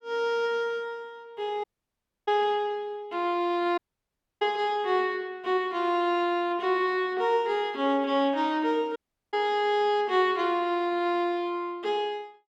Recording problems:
audio cutting out; at 1.5 s for 0.5 s, at 4 s for 0.5 s and at 9 s

